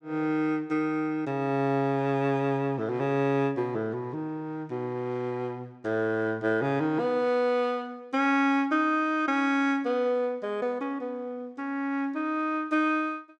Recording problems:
none

